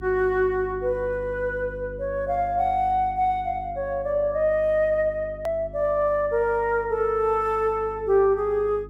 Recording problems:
hum; 50 Hz, harmonics up to 400 Hz, SNR 18 dB
click at an edit; at 5.5 s

